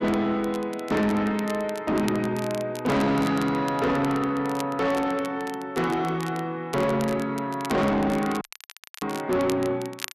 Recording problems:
distortion; soft clipping, signal-to-distortion ratio 8 dB
crackling; vinyl, SNR 17 dB
dropout; at 8.5 s for 0.5 s

